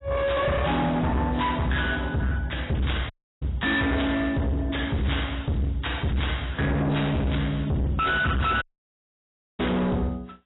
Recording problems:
codec artefacts; AAC, log-spectral distance 4 dB, nothing above 3.8 kHz
distorted audio; hard clipping, signal-to-distortion ratio 6 dB
dropout; at 3 s and at 8.5 s for 1 s

